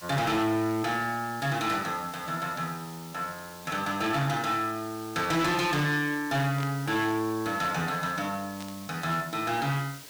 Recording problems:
distortion; hard clipping, uneven, signal-to-distortion ratio 11 dB
background hiss; slope 0 dB per octave, SNR 16 dB
static burst; at 4 s, at 6.5 s and at 8.5 s; peak -8 dB vs average level

